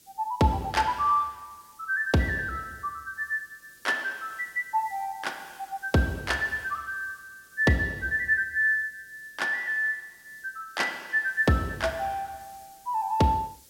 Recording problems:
hiss; SNR 26 dB

